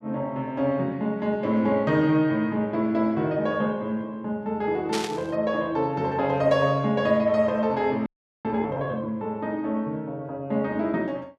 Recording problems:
static burst; at 5 s; peak -1 dB vs average level
audio freezing; at 8 s

